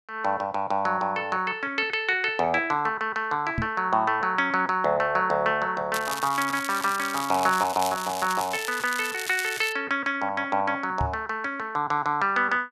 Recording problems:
microphone bump; at 3.5 s and at 11 s; peak 0 dB vs average level
crackling; from 6 to 9.5 s; loose cable, SNR 10 dB

